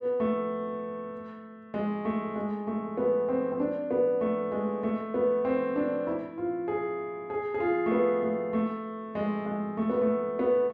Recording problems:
none

